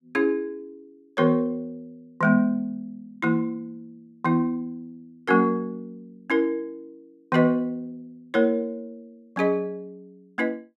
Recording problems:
none

